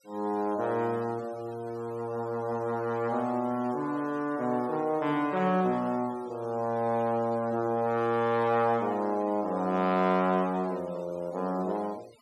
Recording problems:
noise reduction artefacts; signal-to-artefact ratio 24 dB

